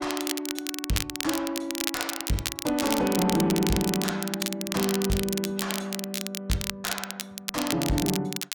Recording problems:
distorted audio; soft clipping, signal-to-distortion ratio 10 dB
crackle; vinyl, SNR 3 dB

